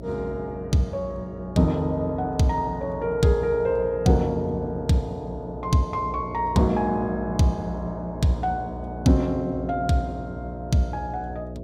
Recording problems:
electrical hum; 60 Hz, harmonics up to 660 Hz, SNR 12 dB

